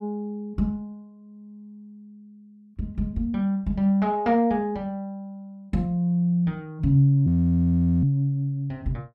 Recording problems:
frozen audio; at 7.5 s for 1 s

